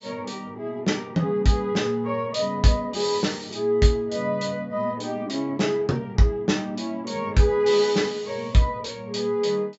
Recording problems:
treble missing; nothing above 8 kHz

